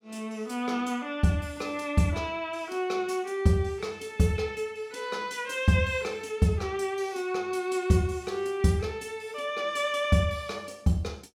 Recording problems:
none

